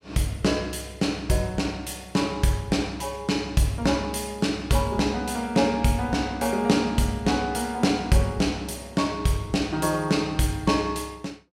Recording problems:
none

